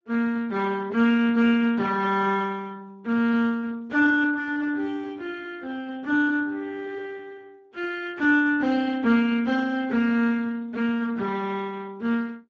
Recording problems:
lossy compression; Speex, log-spectral distance 3 dB

